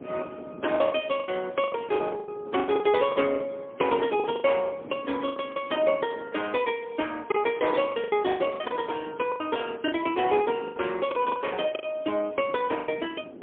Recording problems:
phone line; 240 Hz to 3.5 kHz, AMR-NB, then MP3
wind noise; below 460 Hz, SNR 18 dB
packet loss; 13% of the sound replaced, filled with the last packet

